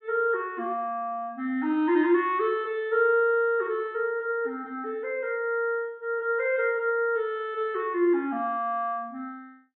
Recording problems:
treble cut off; nothing above 4 kHz

